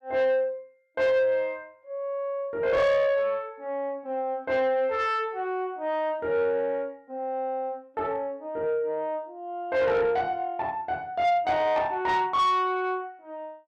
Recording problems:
distorted audio; soft clipping, signal-to-distortion ratio 11 dB

